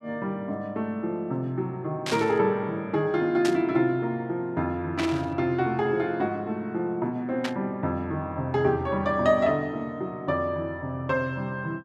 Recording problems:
static burst; 4 times, first at 2 s; peak 0 dB vs average level

